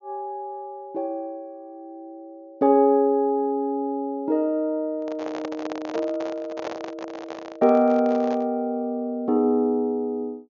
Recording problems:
low-pass filter; nothing above 6.9 kHz
microphone handling noise; from 5 to 8.5 s; peak -5 dB vs average level

